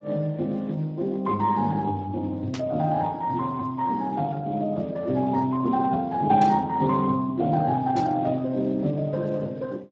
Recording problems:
codec artefacts; Speex, log-spectral distance 2 dB
static burst; at 2.5 s, at 6.5 s and at 8 s; peak -8 dB vs average level

